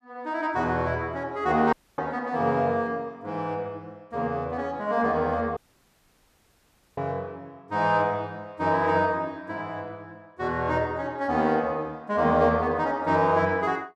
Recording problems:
dropout; at 1.5 s and at 5.5 s for 1.5 s

